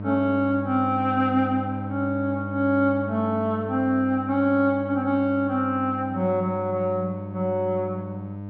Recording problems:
hum; 50 Hz, harmonics up to 1 kHz, SNR 9 dB

